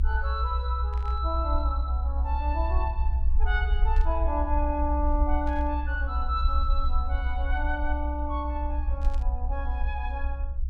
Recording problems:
rumble; below 64 Hz, SNR -4 dB
burst of static; 4 times, first at 1 s; peak -13 dB vs average level

